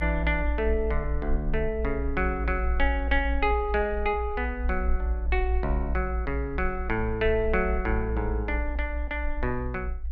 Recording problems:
rumble; below 58 Hz, strongest tone 56 Hz, SNR 2 dB

